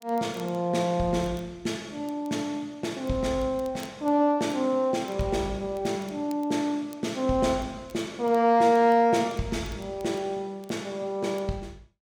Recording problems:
crackle; vinyl, SNR 29 dB

